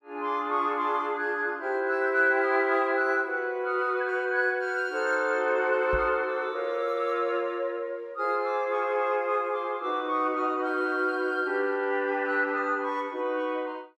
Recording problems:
knock on the microphone; at 6 s; peak -4 dB vs average level

